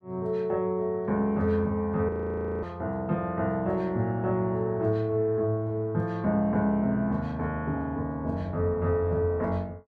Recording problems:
audio freezing; at 2 s for 0.5 s

